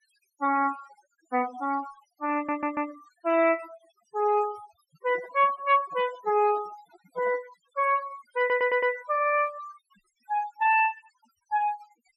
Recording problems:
denoising artefacts; signal-to-artefact ratio 18 dB
audio stuttering; at 2.5 s and at 8.5 s
microphone handling noise; from 5 to 7.5 s; peak -14 dB vs average level

